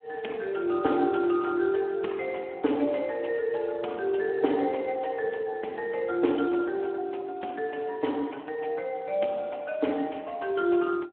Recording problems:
phone line; 240 Hz to 3.3 kHz, Speex

